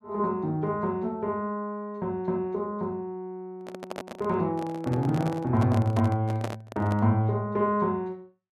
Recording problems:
microphone handling noise; from 3.5 to 7 s; peak -1 dB vs average level

